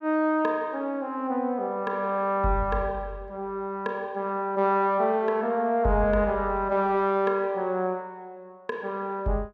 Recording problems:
none

